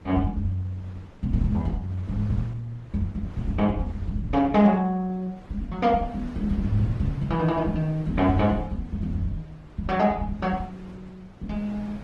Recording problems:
lossy compression; Opus, log-spectral distance 2 dB
wind on the microphone; below 410 Hz, SNR 19 dB

